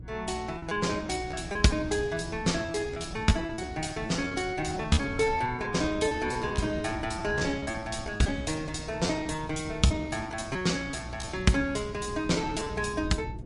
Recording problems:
lossy codec; MP3, log-spectral distance 3 dB, nothing above 11 kHz
electrical hum; 60 Hz, harmonics up to 360 Hz, SNR 16 dB
wind noise; below 200 Hz, SNR 15 dB
lost packets; 16% of the sound replaced, filled with repeated pitch periods

